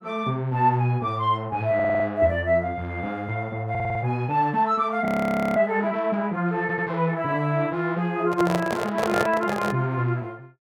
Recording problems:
stutter; at 1.5 s, at 3.5 s and at 6.5 s
audio freezing; at 5 s for 0.5 s
handling noise; from 8.5 to 10 s; peak +3 dB vs average level

